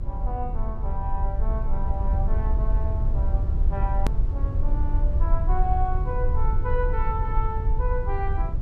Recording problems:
electrical hum; 50 Hz, harmonics up to 400 Hz, SNR 11 dB
low-frequency rumble; below 64 Hz, SNR -7 dB
click at an edit; at 4 s

